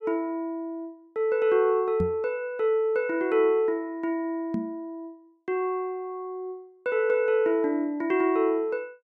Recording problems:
knock on the microphone; at 2 s and at 4.5 s; peak +1 dB vs average level

